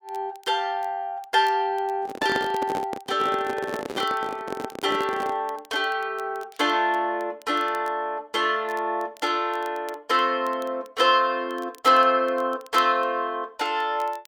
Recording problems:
crackle; vinyl, SNR 27 dB
microphone handling noise; from 2 to 5.5 s; peak 0 dB vs average level

